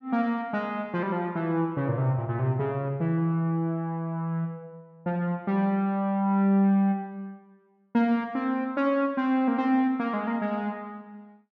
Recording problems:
none

